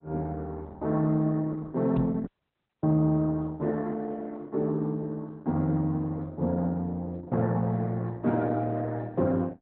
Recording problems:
codec artefacts; Opus, log-spectral distance 2 dB
microphone thump; at 2 s; peak +3 dB vs average level
dropout; at 2.5 s for 0.5 s

